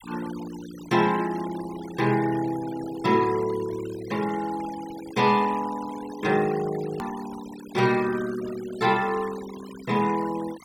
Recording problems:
denoising artefacts; signal-to-artefact ratio 16 dB
click at an edit; at 7 s

